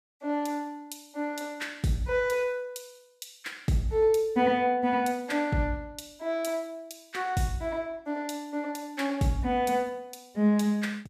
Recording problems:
none

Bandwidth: 15 kHz